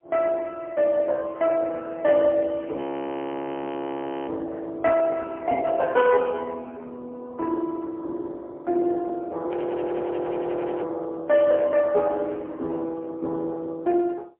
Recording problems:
telephone audio; 280 Hz to 3.3 kHz, AMR-NB, then MP3
frozen audio; at 3 s for 1.5 s and at 9.5 s for 1.5 s

